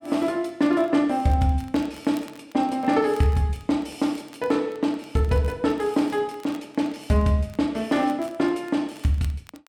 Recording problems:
crackling; vinyl, SNR 28 dB

